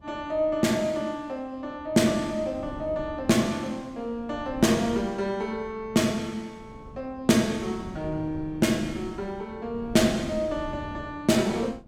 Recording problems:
wind noise; below 250 Hz, SNR 17 dB

